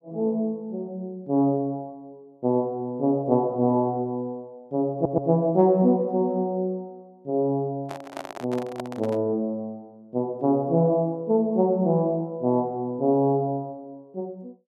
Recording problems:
stutter; at 5 s
handling noise; from 8 to 9 s; peak -5 dB vs average level

